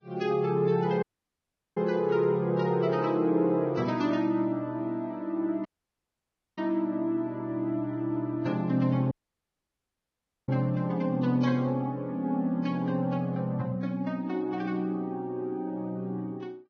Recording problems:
codec artefacts; Vorbis, log-spectral distance 2 dB, nothing above 6.3 kHz
dropout; at 1 s for 0.5 s, at 5.5 s for 1 s and at 9 s for 1.5 s

